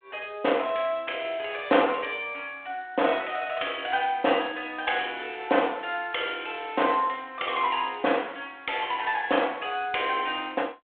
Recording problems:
telephone audio; 280 Hz to 3.4 kHz, G.726

